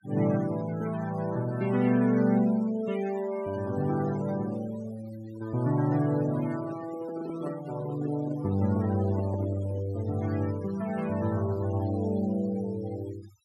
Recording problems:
noise reduction artefacts; signal-to-artefact ratio 19 dB
handling noise; from 6.5 to 10 s; peak -5 dB vs average level

